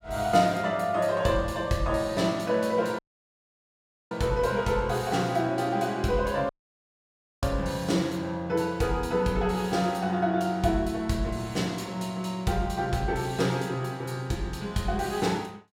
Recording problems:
audio cutting out; at 3 s for 1 s and at 6.5 s for 1 s

